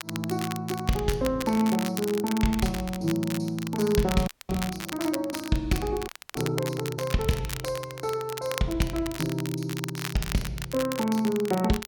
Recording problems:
crackle; vinyl, SNR 9 dB
frozen audio; at 4.5 s and at 6 s

